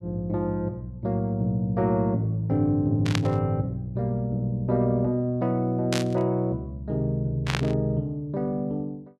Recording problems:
static burst; at 3 s, at 6 s and at 7.5 s; peak +2 dB vs average level

